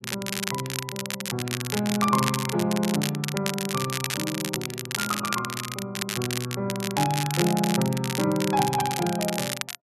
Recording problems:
crackle; vinyl, SNR 3 dB

